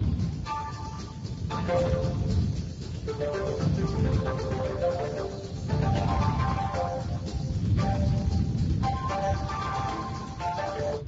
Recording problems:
codec artefacts; Speex, then Vorbis, log-spectral distance 4 dB, nothing above 7.3 kHz
rumble; below 180 Hz, SNR 0 dB
wind on the microphone; below 430 Hz, SNR 18 dB

